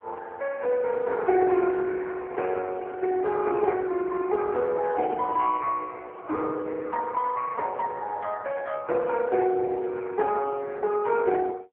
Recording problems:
telephone audio; 280 Hz to 2.2 kHz, AMR-NB

